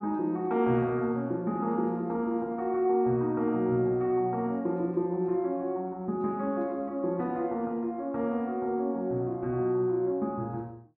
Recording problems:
none

